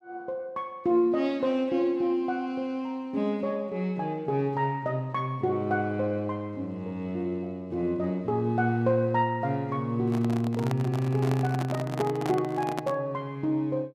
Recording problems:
handling noise; from 10 to 13 s; peak -1 dB vs average level

